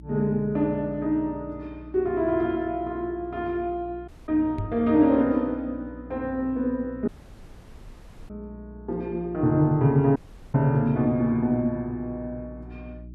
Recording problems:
electrical hum; 60 Hz, harmonics up to 360 Hz, SNR 20 dB
audio cutting out; at 4 s, at 7 s for 1 s and at 10 s
microphone thump; at 4.5 s; peak -3 dB vs average level

